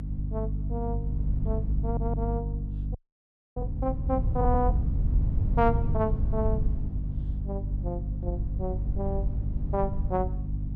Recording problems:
hum; 50 Hz, harmonics up to 300 Hz, SNR 0 dB
wind on the microphone; below 94 Hz, SNR 1 dB
audio stuttering; at 2 s
frozen audio; at 3 s for 0.5 s

